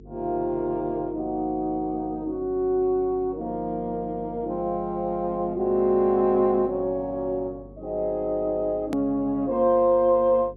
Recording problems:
low-pass filter; nothing above 7.4 kHz
hum; 50 Hz, harmonics up to 450 Hz, SNR 22 dB
edit click; at 9 s

